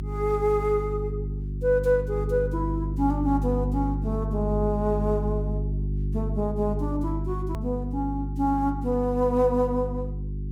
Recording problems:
hum; 50 Hz, harmonics up to 400 Hz, SNR 4 dB
hard cut with a click; at 7.5 s

